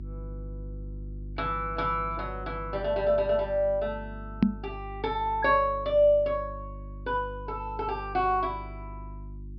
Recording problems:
treble cut off; nothing above 5.5 kHz
mains hum; 50 Hz, harmonics up to 350 Hz, SNR 13 dB
microphone bump; at 4.5 s; peak +9 dB vs average level

